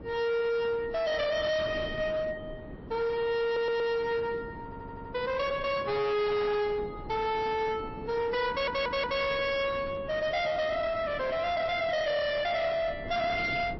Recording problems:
lossy compression; MP3, log-spectral distance 2 dB, nothing above 5.7 kHz
distortion; hard clipping, signal-to-distortion ratio 7 dB
wind noise; below 510 Hz, SNR 14 dB
audio stuttering; at 3.5 s, at 4.5 s and at 8.5 s

